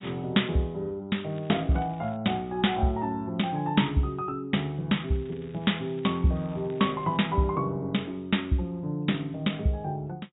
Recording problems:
treble missing; nothing above 4 kHz
crackling; at 1.5 s and from 5 to 7 s; loose cable, SNR 27 dB

